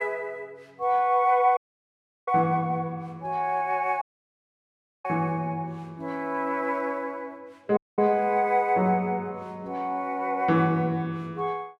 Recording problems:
audio cutting out; at 1.5 s for 0.5 s, at 4 s for 1 s and at 8 s

